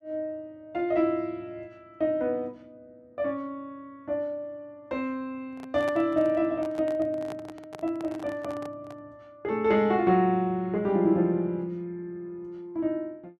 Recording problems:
handling noise; from 5.5 to 9 s; peak -6 dB vs average level

